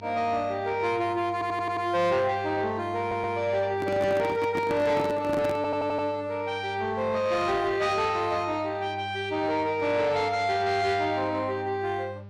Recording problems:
distortion; soft clipping, signal-to-distortion ratio 11 dB
hum; 50 Hz, harmonics up to 1.2 kHz, SNR 18 dB
audio stuttering; at 1.5 s, at 3 s and at 5.5 s
microphone handling noise; from 4 to 6 s; peak 0 dB vs average level

